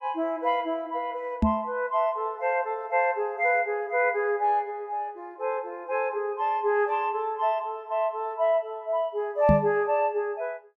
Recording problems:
knock on the microphone; at 1.5 s and at 9.5 s; peak +7 dB vs average level

